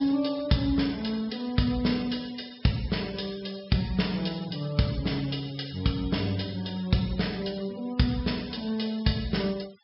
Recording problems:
low-pass filter; nothing above 5.4 kHz
noise reduction artefacts; signal-to-artefact ratio 19 dB

